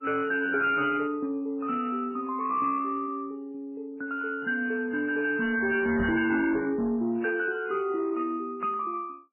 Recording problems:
lossy codec; MP3, then AAC, log-spectral distance 2 dB, nothing above 2.5 kHz
distorted audio; soft clipping, signal-to-distortion ratio 11 dB
microphone thump; at 6 s; peak -1 dB vs average level

